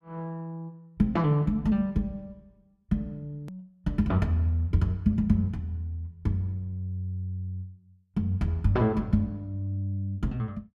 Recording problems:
edit click; at 3.5 s

